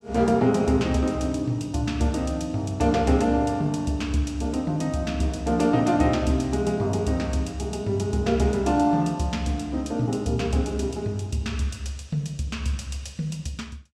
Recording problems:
none

